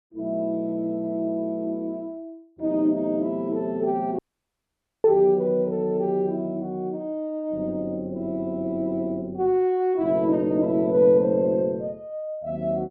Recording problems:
audio cutting out; at 4 s for 1 s

